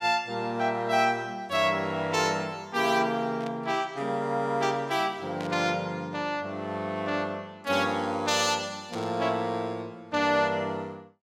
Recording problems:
static burst; at 3.5 s, at 5.5 s and at 9 s; peak -10 dB vs average level

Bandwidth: 16.5 kHz